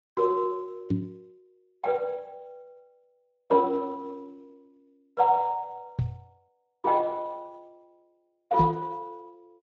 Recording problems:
lossy codec; AAC, then Speex, log-spectral distance 2 dB
microphone bump; at 1 s, at 6 s and at 8.5 s; peak +5 dB vs average level

